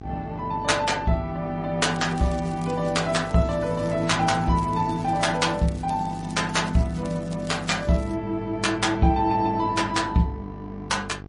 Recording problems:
codec artefacts; MP3, then MP3, log-spectral distance 3 dB, nothing above 10.4 kHz
electrical hum; 50 Hz, harmonics up to 1.2 kHz, SNR 15 dB
crackle; from 2 to 8 s; loose cable, SNR 23 dB

